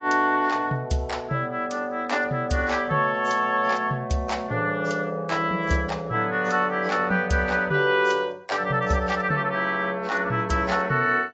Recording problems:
codec artefacts; AAC, log-spectral distance 2 dB, nothing above 7.6 kHz

